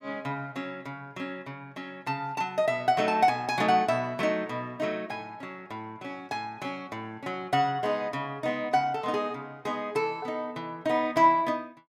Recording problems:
none

